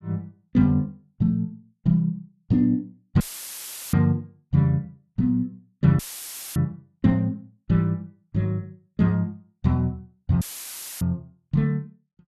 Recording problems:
audio cutting out; at 3 s for 0.5 s, at 6 s for 0.5 s and at 10 s for 0.5 s; filled with static

